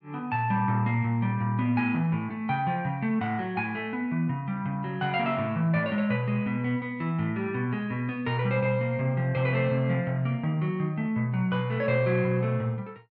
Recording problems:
none

